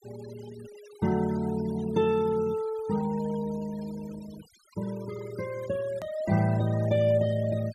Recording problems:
noise reduction artefacts; signal-to-artefact ratio 19 dB
edit click; at 6 s

